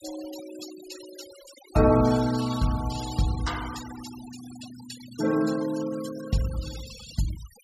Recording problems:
denoising artefacts; signal-to-artefact ratio 14 dB

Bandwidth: 14.5 kHz